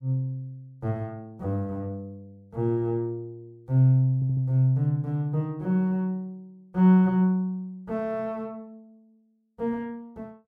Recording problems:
stutter; at 4 s

